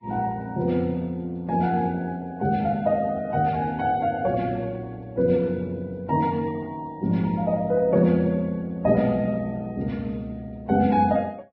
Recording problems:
lossy compression; Vorbis, log-spectral distance 2 dB

